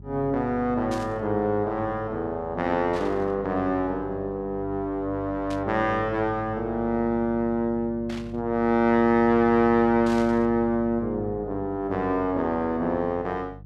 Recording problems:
hum; 50 Hz, harmonics up to 400 Hz, SNR 17 dB
burst of static; 5 times, first at 1 s; peak -11 dB vs average level

